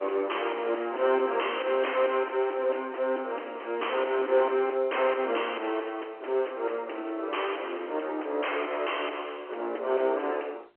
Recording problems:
telephone audio; 280 Hz to 3.1 kHz, G.711
distortion; soft clipping, signal-to-distortion ratio 7 dB

